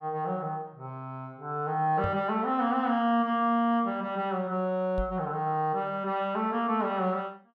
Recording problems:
knock on the microphone; at 2 s and at 5 s; peak -2 dB vs average level

